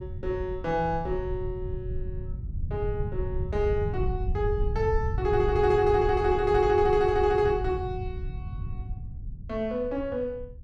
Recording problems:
low-frequency rumble; below 100 Hz, SNR 7 dB

